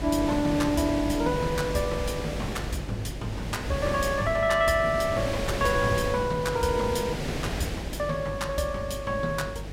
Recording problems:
hum; 50 Hz, harmonics up to 550 Hz, SNR 12 dB
wind noise; below 1.6 kHz, SNR 7 dB

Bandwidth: 16 kHz